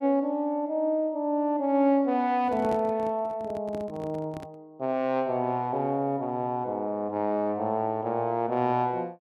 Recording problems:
handling noise; from 2.5 to 4.5 s; peak -7 dB vs average level

